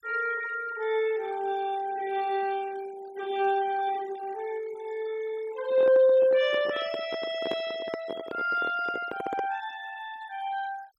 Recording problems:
noise reduction artefacts; signal-to-artefact ratio 19 dB
microphone handling noise; from 5.5 to 9.5 s; peak -2 dB vs average level

